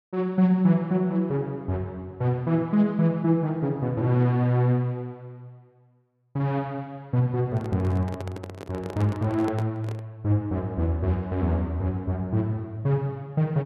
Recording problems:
handling noise; from 7.5 to 10 s; peak -5 dB vs average level

